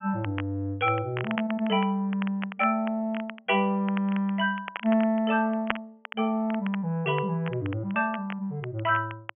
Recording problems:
treble missing; nothing above 3.2 kHz
crackling; vinyl, SNR 14 dB

